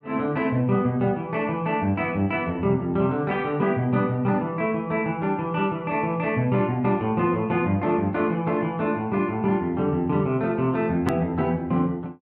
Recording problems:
click at an edit; at 11 s

